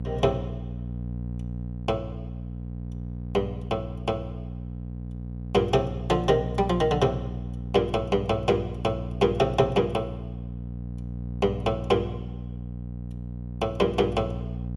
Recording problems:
electrical hum; 60 Hz, harmonics up to 540 Hz, SNR 8 dB

